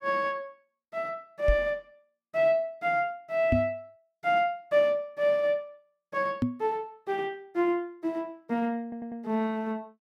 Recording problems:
microphone thump; at 1.5 s, at 3.5 s and at 6.5 s; peak +6 dB vs average level
audio stuttering; at 9 s

